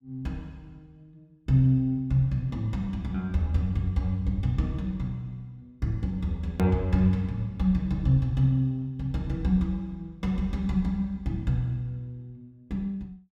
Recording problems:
hard cut with a click; at 6.5 s

